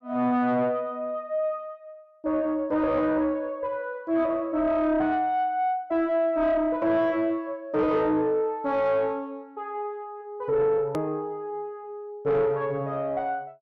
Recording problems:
distorted audio; soft clipping, signal-to-distortion ratio 11 dB
click at an edit; at 11 s

